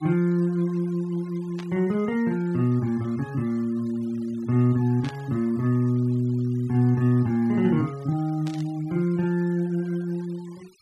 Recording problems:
denoising artefacts; signal-to-artefact ratio 26 dB
burst of static; at 1.5 s, at 5 s and at 8.5 s; peak -13 dB vs average level

